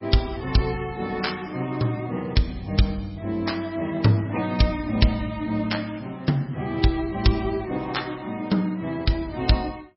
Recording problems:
codec artefacts; MP3, log-spectral distance 4 dB, nothing above 5.5 kHz

